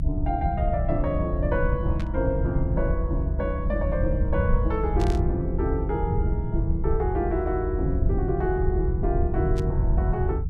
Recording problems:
low-frequency rumble; below 96 Hz, SNR -1 dB
static burst; at 2 s, at 5 s and at 9.5 s; peak -8 dB vs average level

